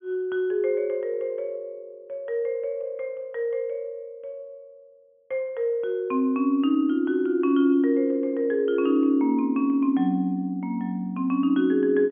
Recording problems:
treble cut off; nothing above 3.4 kHz

